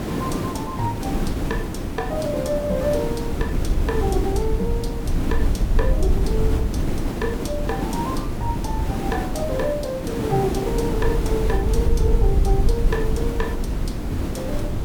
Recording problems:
hiss; SNR 0 dB
wind on the microphone; below 64 Hz, SNR -1 dB

